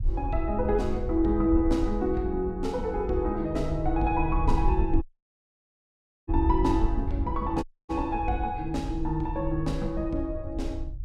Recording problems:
low-frequency rumble; below 68 Hz, SNR 5 dB
audio cutting out; at 5 s for 1.5 s and at 7.5 s

